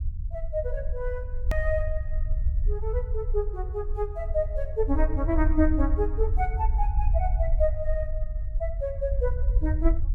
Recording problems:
rumble; below 62 Hz, SNR -1 dB
click at an edit; at 1.5 s

